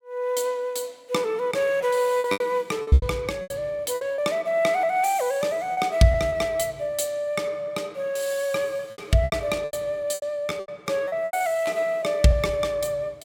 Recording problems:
packet loss; 10% of the sound replaced, filled with repeated pitch periods

